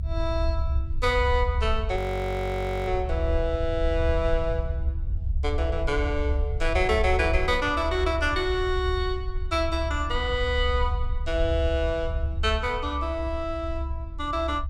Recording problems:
low-frequency rumble; below 72 Hz, SNR 3 dB
frozen audio; at 2 s for 1 s

